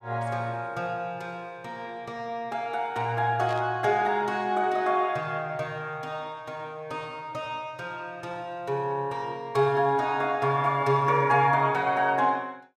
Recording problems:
burst of static; at 3.5 s; peak -11 dB vs average level

